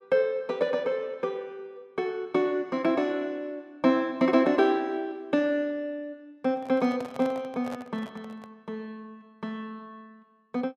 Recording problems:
handling noise; from 6.5 to 8.5 s; peak -9 dB vs average level

